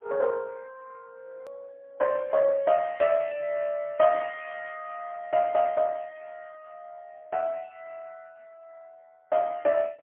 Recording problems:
telephone audio; 280 Hz to 3.8 kHz, AMR-NB, then MP3
edit click; at 1.5 s

